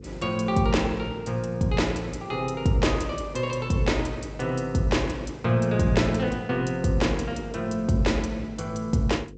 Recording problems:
lossy compression; G.722, log-spectral distance 2 dB, nothing above 8 kHz
hum; 50 Hz, harmonics up to 500 Hz, SNR 18 dB

